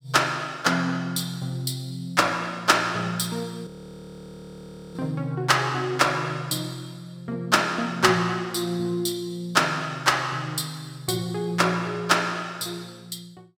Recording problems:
frozen audio; at 3.5 s for 1.5 s

